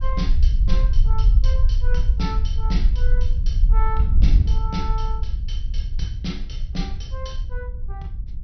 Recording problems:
treble missing; nothing above 6 kHz
rumble; below 50 Hz, SNR -9 dB
wind on the microphone; below 68 Hz, SNR -4 dB

